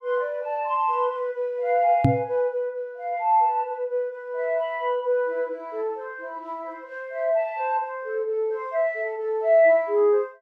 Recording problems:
microphone bump; at 2 s; peak +8 dB vs average level

